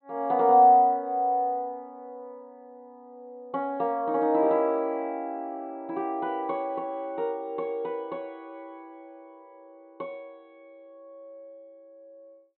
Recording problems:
low-pass filter; nothing above 4.2 kHz

